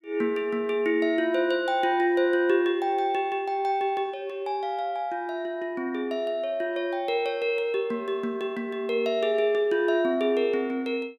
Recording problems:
none

